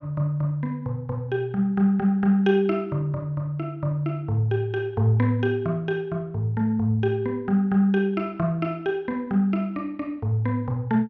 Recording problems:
none

